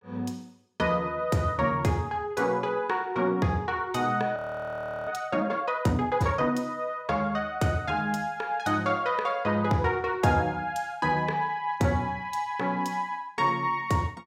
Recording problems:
frozen audio; at 4.5 s for 0.5 s

